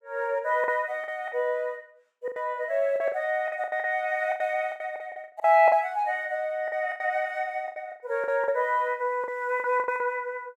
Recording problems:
lost packets; 14% of the sound replaced, filled with the last packet

